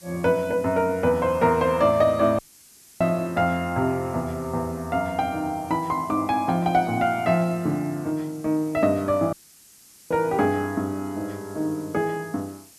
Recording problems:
background hiss; SNR 24 dB
audio cutting out; at 2.5 s for 0.5 s and at 9.5 s for 1 s

